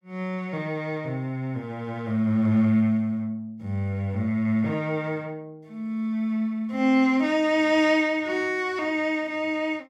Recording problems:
none

